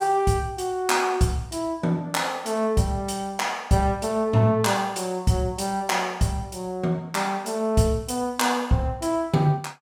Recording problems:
none

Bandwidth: 17 kHz